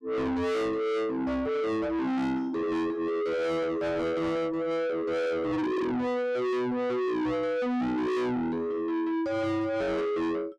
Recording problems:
distortion; soft clipping, signal-to-distortion ratio 6 dB

